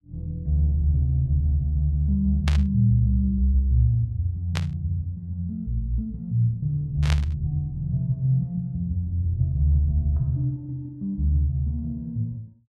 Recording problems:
static burst; at 2.5 s, at 4.5 s and at 7 s; peak -2 dB vs average level

